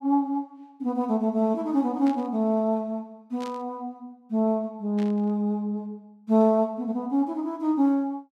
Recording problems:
burst of static; at 2 s, at 3.5 s and at 5 s; peak -14 dB vs average level

